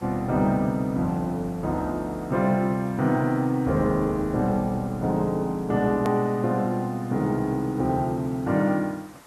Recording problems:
background hiss; SNR 25 dB
hard cut with a click; at 6 s

